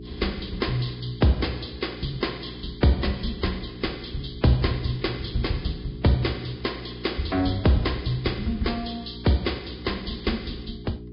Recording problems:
treble cut off; nothing above 5.2 kHz
codec artefacts; Vorbis, log-spectral distance 7 dB
mains hum; 60 Hz, harmonics up to 420 Hz, SNR 13 dB

